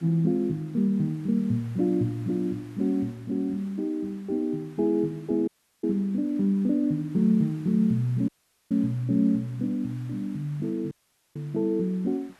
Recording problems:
hiss; SNR 28 dB
audio cutting out; at 5.5 s, at 8.5 s and at 11 s

